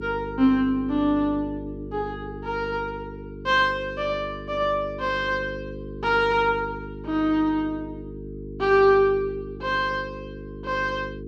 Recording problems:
hum; 50 Hz, harmonics up to 450 Hz, SNR 13 dB

